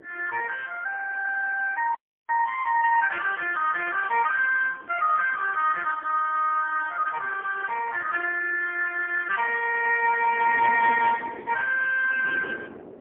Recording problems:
telephone audio; 390 Hz to 2.7 kHz, AMR-NB, then MP3
wind on the microphone; below 540 Hz, SNR 18 dB
audio cutting out; at 2 s

